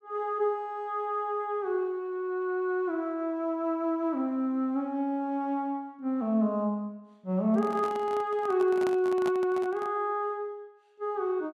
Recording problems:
handling noise; from 7.5 to 10 s; peak -4 dB vs average level

